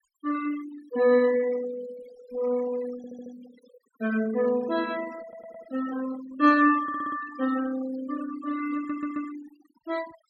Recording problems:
noise reduction artefacts; signal-to-artefact ratio 16 dB
audio stuttering; 4 times, first at 3 s

